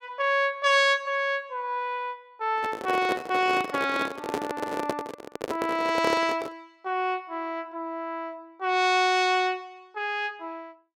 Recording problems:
microphone handling noise; from 2.5 to 6.5 s; peak +2 dB vs average level

